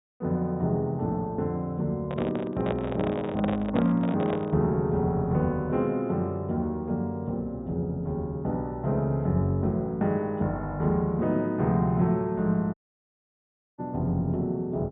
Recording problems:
treble cut off; nothing above 4 kHz
microphone handling noise; from 2 to 4.5 s; peak +1 dB vs average level
audio cutting out; at 13 s for 1 s

